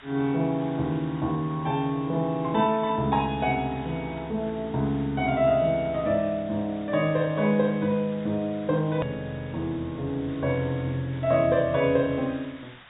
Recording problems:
treble cut off; nothing above 4 kHz
background hiss; SNR 22 dB
hard cut with a click; at 9 s

